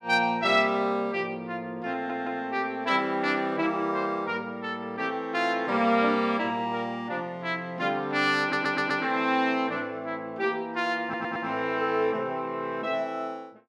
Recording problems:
audio stuttering; at 2 s, at 8.5 s and at 11 s

